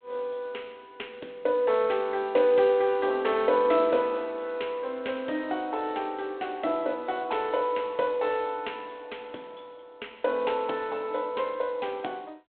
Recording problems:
telephone audio; 280 Hz to 3.6 kHz, G.726

